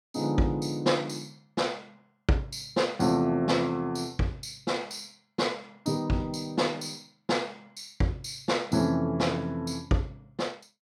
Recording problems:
none

